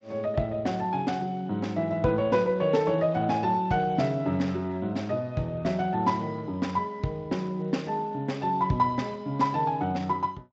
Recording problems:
codec artefacts; Speex, log-spectral distance 2 dB

